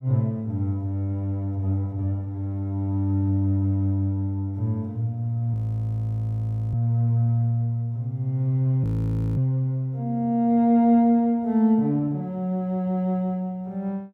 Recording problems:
audio freezing; at 5.5 s for 1 s and at 9 s for 0.5 s

